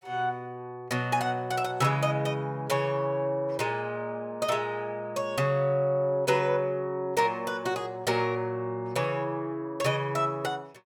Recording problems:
none

